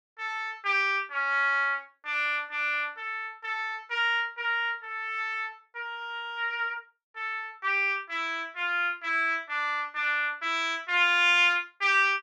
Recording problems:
none

